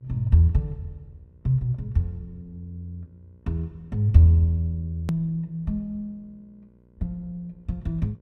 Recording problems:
electrical hum; 60 Hz, harmonics up to 1 kHz, SNR 33 dB
click at an edit; at 5 s

